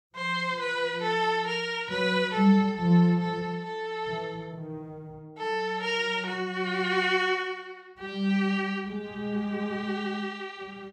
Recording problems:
none

